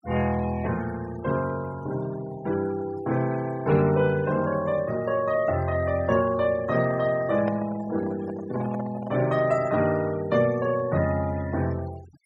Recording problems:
noise reduction artefacts; signal-to-artefact ratio 19 dB
microphone handling noise; from 6.5 to 10 s; peak -5 dB vs average level

